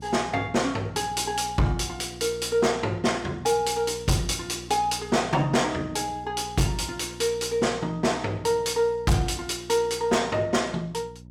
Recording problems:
distorted audio; hard clipping, signal-to-distortion ratio 12 dB
electrical hum; 60 Hz, harmonics up to 600 Hz, SNR 18 dB

